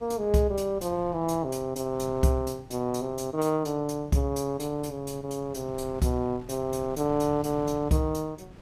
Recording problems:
wind noise; below 250 Hz, SNR 19 dB

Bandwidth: 15 kHz